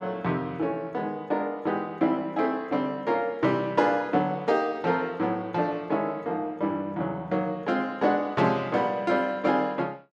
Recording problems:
none

